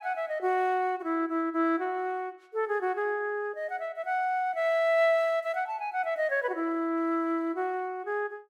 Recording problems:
none

